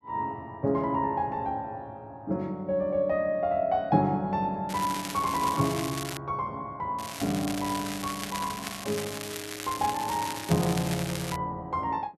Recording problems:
crackling; from 4.5 to 6 s and from 7 to 11 s; loose cable, SNR 7 dB

